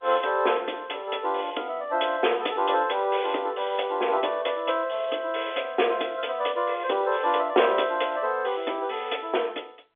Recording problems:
telephone audio; 260 Hz to 3.6 kHz, G.711

